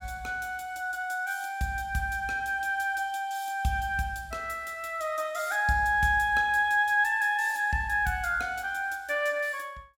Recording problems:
none

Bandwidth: 16.5 kHz